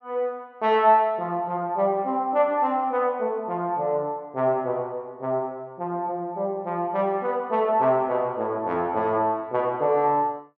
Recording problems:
none

